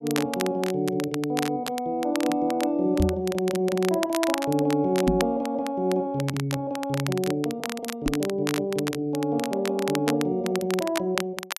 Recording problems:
crackle; vinyl, SNR 9 dB
knock on the microphone; at 3 s, at 5 s and at 8 s; peak +5 dB vs average level

